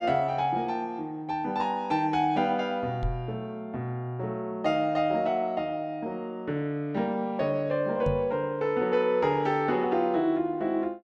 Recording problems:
microphone thump; at 3 s and at 8 s; peak +1 dB vs average level

